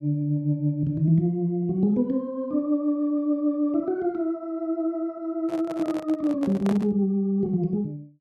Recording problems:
handling noise; from 5.5 to 7 s; peak -5 dB vs average level

